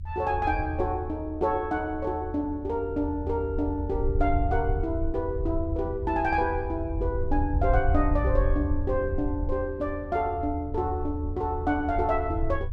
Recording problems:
rumble; below 80 Hz, SNR 4 dB

